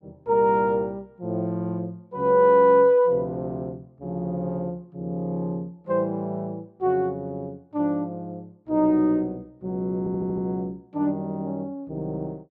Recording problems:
audio stuttering; at 10 s

